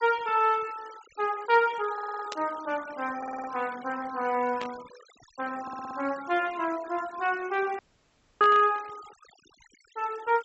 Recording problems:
treble missing; nothing above 7.9 kHz
denoising artefacts; signal-to-artefact ratio 19 dB
stutter; at 2 s, at 3 s and at 5.5 s
static burst; at 2.5 s, at 4.5 s and at 8.5 s; peak -5 dB vs average level
audio cutting out; at 8 s for 0.5 s

